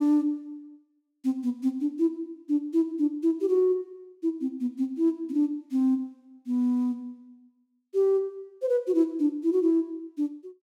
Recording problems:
none

